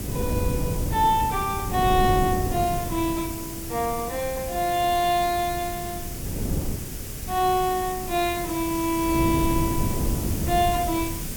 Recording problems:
hiss; slope +2 dB per octave, SNR 10 dB
wind noise; below 240 Hz, SNR 6 dB

